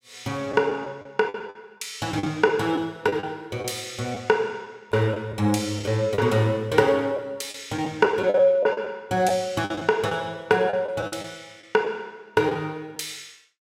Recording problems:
lost packets; 8% of the sound replaced, filled with the last packet

